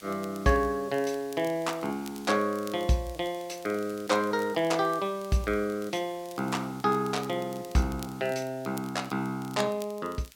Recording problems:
hiss; slope +1 dB per octave, SNR 22 dB
crackle; vinyl, SNR 22 dB

